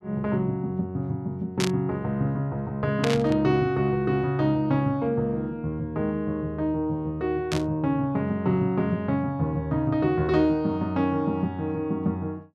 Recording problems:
burst of static; at 1.5 s, at 3 s and at 7.5 s; peak +1 dB vs average level

